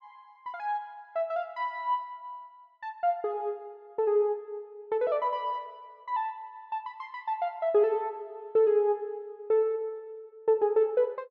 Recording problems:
none

